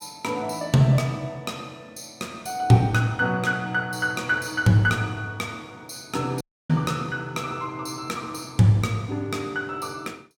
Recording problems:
dropout; at 6.5 s

